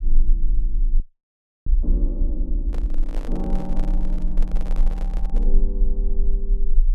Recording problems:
low-frequency rumble; below 36 Hz, strongest tone 20 Hz, SNR -10 dB
frozen audio; at 1 s for 0.5 s
handling noise; from 2.5 to 5.5 s; peak 0 dB vs average level

